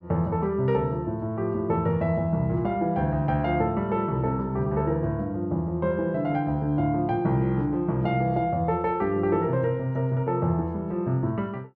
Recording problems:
none

